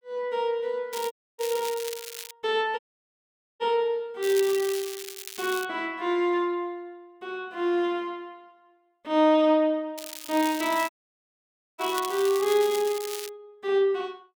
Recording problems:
crackling; from 1 to 2.5 s, from 4 to 5.5 s and from 10 to 13 s; loose cable, SNR 11 dB
audio cutting out; at 1 s, at 3 s for 1 s and at 11 s for 1 s

